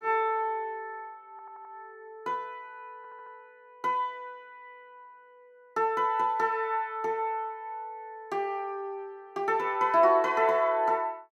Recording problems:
audio stuttering; at 1.5 s and at 3 s

